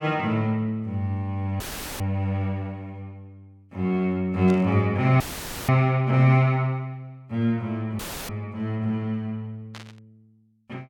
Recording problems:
audio cutting out; at 1.5 s, at 5 s and at 8 s; filled with static
static burst; at 4.5 s and at 9.5 s; peak -12 dB vs average level

